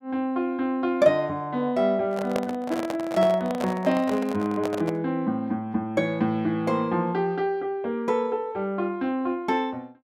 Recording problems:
microphone handling noise; from 2 to 5 s; peak +1 dB vs average level

